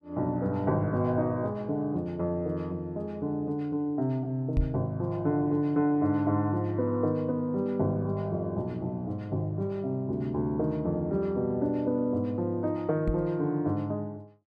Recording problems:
microphone bump; at 4.5 s and at 13 s; peak +4 dB vs average level

